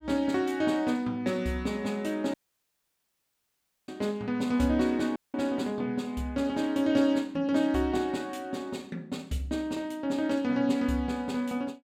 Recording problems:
audio cutting out; at 2.5 s for 1.5 s and at 5 s

